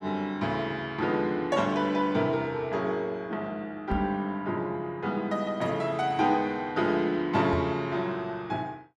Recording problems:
microphone thump; at 4 s and at 7.5 s; peak 0 dB vs average level

